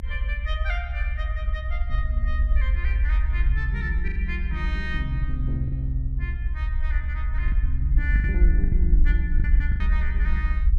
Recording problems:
rumble; below 64 Hz, SNR -8 dB
packet loss; 4% of the sound replaced, filled with the last packet

